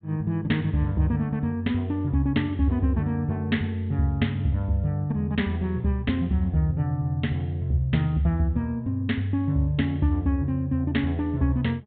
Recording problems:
treble missing; nothing above 4 kHz

